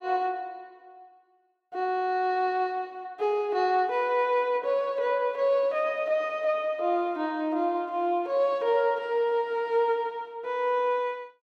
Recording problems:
none

